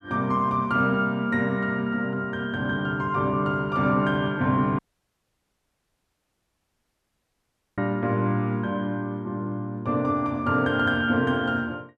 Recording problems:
audio cutting out; at 5 s for 3 s

